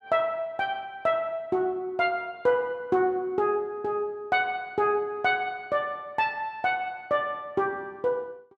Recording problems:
none

